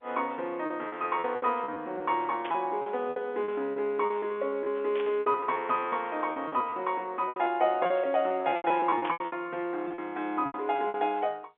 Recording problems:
phone line; 260 Hz to 3.5 kHz, G.711
packet loss; 14% of the sound replaced, filled with repeated pitch periods
static burst; at 2.5 s, at 5 s and at 9 s; peak -4 dB vs average level

